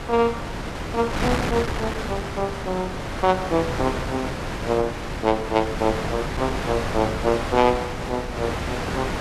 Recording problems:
wind noise; below 1.5 kHz, SNR 3 dB

